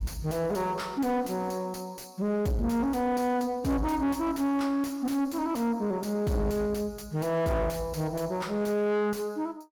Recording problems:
distorted audio; soft clipping, signal-to-distortion ratio 8 dB

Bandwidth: 18 kHz